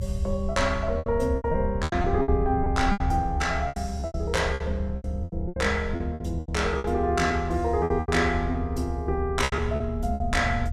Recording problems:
rumble; below 80 Hz, strongest tone 72 Hz, SNR 5 dB
lost packets; 15% of the sound replaced, filled with repeated pitch periods

